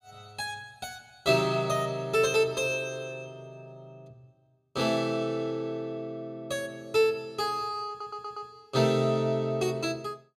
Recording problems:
stutter; at 8 s

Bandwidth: 15.5 kHz